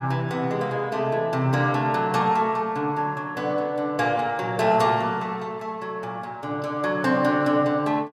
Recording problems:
none

